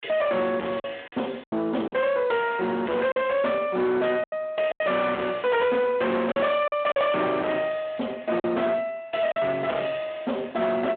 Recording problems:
telephone audio; 190 Hz to 3.6 kHz, Speex
distortion; soft clipping, signal-to-distortion ratio 6 dB
lost packets; 5% of the sound replaced, filled with silence

